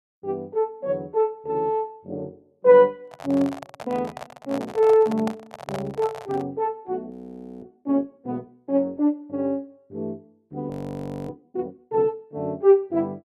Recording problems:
microphone handling noise; from 3 to 6.5 s; peak -4 dB vs average level
audio freezing; at 7 s for 0.5 s and at 11 s for 0.5 s

